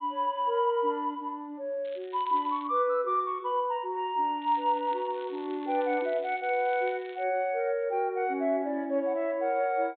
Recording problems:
low-pass filter; nothing above 4 kHz
crackling; at 2 s and from 4.5 to 7 s; loose cable, SNR 24 dB

